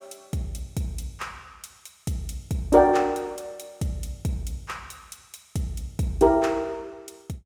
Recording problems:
none

